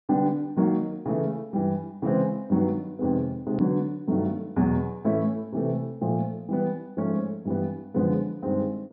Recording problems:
treble cut off; nothing above 5.5 kHz
edit click; at 3.5 s

